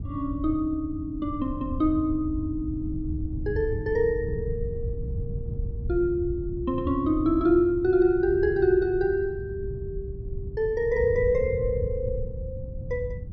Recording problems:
wind noise; below 120 Hz, SNR 8 dB

